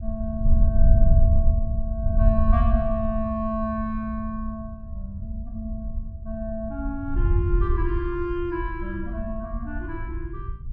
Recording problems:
wind on the microphone; below 72 Hz, SNR -4 dB

